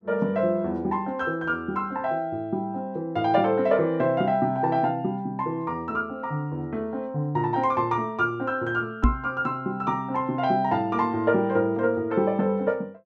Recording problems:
microphone thump; at 9 s; peak +9 dB vs average level

